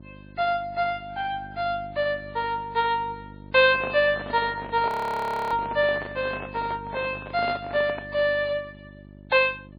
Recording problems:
codec artefacts; MP3, log-spectral distance 3 dB, nothing above 20.1 kHz
hum; 50 Hz, harmonics up to 700 Hz, SNR 19 dB
microphone handling noise; from 3.5 to 8 s; peak -4 dB vs average level
audio freezing; at 5 s for 0.5 s

